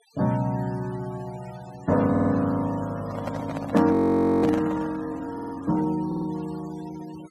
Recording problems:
noise reduction artefacts; signal-to-artefact ratio 22 dB
stutter; at 2 s, at 5.5 s and at 6 s
microphone handling noise; from 3 to 5 s; peak 0 dB vs average level
audio freezing; at 4 s

